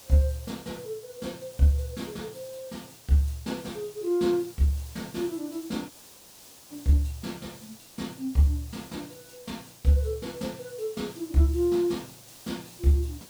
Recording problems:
background hiss; SNR 19 dB
dropout; at 6 s for 1 s

